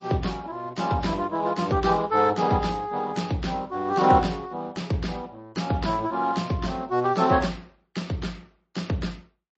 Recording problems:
codec artefacts; Speex, then MP3, log-spectral distance 4 dB, nothing above 7.3 kHz

